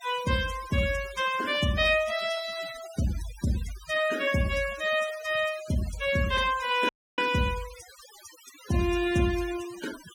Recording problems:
denoising artefacts; signal-to-artefact ratio 15 dB
audio cutting out; at 7 s

